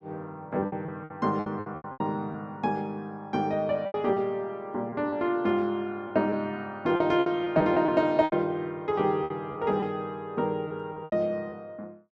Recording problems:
lost packets; 10% of the sound replaced, filled with repeated pitch periods

